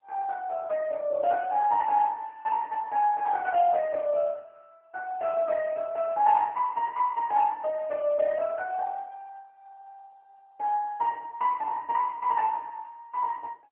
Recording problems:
phone line; 170 Hz to 2.6 kHz, AMR-NB

